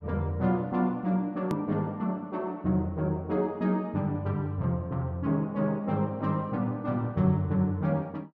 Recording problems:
click at an edit; at 1.5 s

